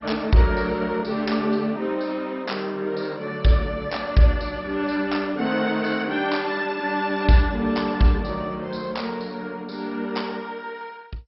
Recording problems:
codec artefacts; MP2, log-spectral distance 4 dB, nothing above 5.5 kHz

